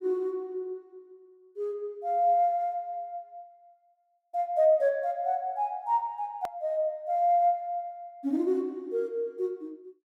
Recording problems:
hard cut with a click; at 6.5 s

